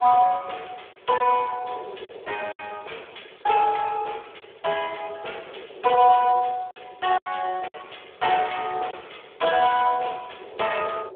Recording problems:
telephone audio; 340 Hz to 3.5 kHz, Speex
wind on the microphone; below 540 Hz, SNR 22 dB
lost packets; 4% of the sound replaced, filled with silence

